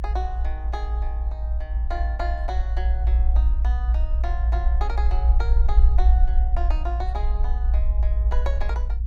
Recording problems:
low-frequency rumble; below 58 Hz, strongest tone 56 Hz, SNR -12 dB

